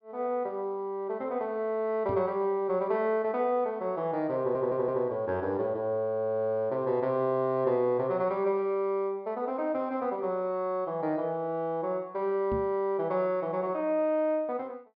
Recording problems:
treble missing; nothing above 5.5 kHz
microphone bump; at 2 s and at 13 s; peak -3 dB vs average level
stutter; at 4.5 s

